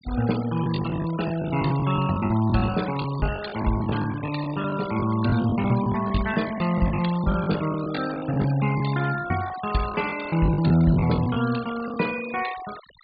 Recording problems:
treble missing; nothing above 4.8 kHz
denoising artefacts; signal-to-artefact ratio 15 dB
packet loss; 13% of the sound replaced, filled with the last packet

